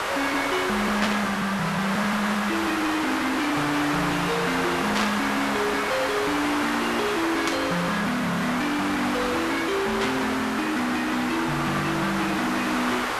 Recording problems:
distorted audio; hard clipping, signal-to-distortion ratio 7 dB
background hiss; SNR 0 dB
static burst; 4 times, first at 1 s; peak +4 dB vs average level

